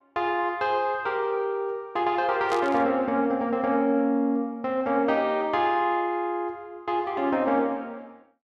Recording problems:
burst of static; at 2.5 s; peak -7 dB vs average level

